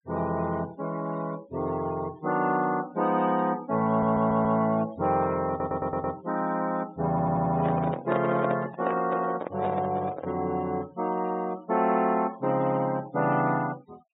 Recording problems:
low-pass filter; nothing above 4 kHz
noise reduction artefacts; signal-to-artefact ratio 21 dB
audio stuttering; at 4 s, at 5.5 s and at 7 s
microphone handling noise; from 7 to 10 s; peak 0 dB vs average level

